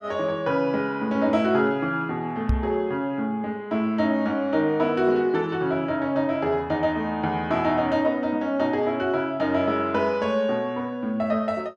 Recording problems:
knock on the microphone; at 2.5 s; peak +4 dB vs average level

